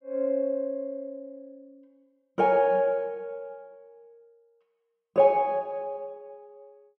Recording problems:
none

